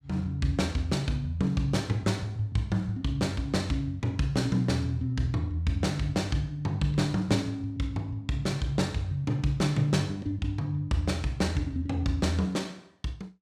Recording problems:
none

